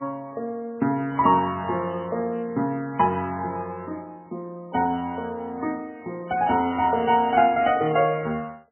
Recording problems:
lossy compression; MP3, log-spectral distance 2 dB, nothing above 2.8 kHz

